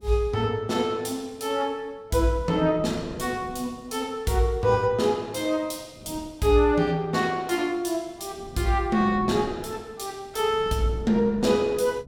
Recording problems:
wind noise; below 280 Hz, SNR 17 dB

